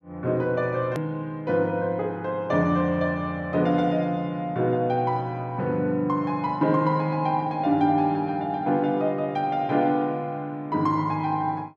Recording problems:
click at an edit; at 1 s

